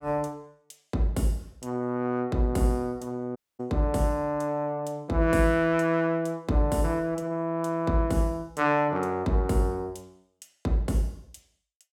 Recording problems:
dropout; at 3.5 s

